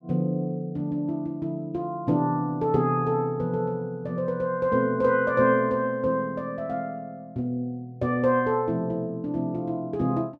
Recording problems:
none

